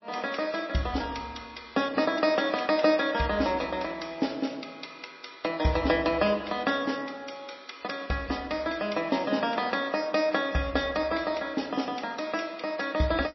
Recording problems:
lossy compression; MP3, log-spectral distance 5 dB, nothing above 5.7 kHz

